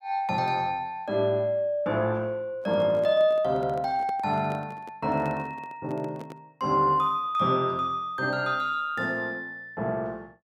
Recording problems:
microphone handling noise; from 2.5 to 6.5 s; peak -10 dB vs average level

